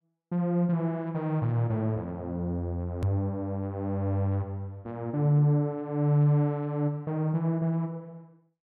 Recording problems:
click at an edit; at 3 s

